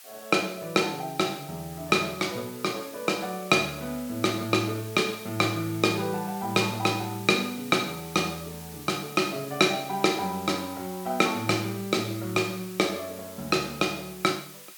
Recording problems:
background hiss; SNR 16 dB

